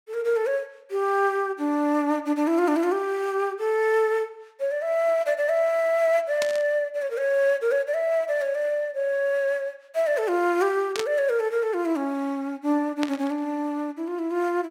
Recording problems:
burst of static; at 6.5 s, at 11 s and at 13 s; peak -2 dB vs average level

